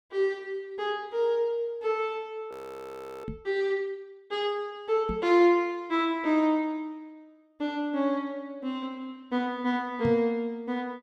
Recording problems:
audio freezing; at 2.5 s for 0.5 s
microphone bump; at 3.5 s, at 5 s and at 10 s; peak -1 dB vs average level

